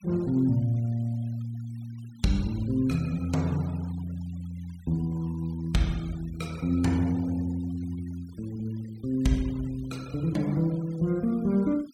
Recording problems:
noise reduction artefacts; signal-to-artefact ratio 24 dB

